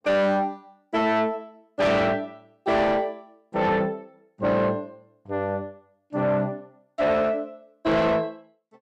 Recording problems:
distorted audio; soft clipping, signal-to-distortion ratio 8 dB

